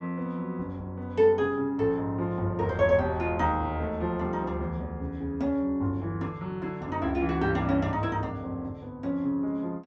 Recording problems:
treble missing; nothing above 8 kHz

